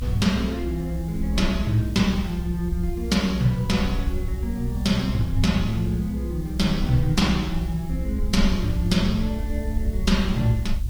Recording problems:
lossy compression; AAC, log-spectral distance 2 dB
background hiss; SNR 24 dB
rumble; below 66 Hz, SNR 5 dB

